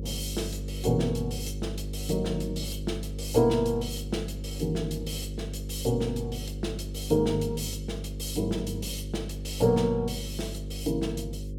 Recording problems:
hum; 50 Hz, harmonics up to 550 Hz, SNR 6 dB

